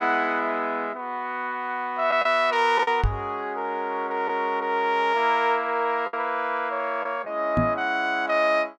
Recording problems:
lost packets; 2% of the sound replaced, filled with the last packet
microphone bump; at 3 s and at 7.5 s; peak +3 dB vs average level

